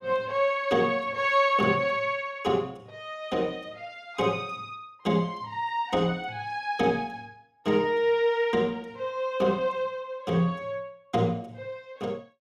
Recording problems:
none

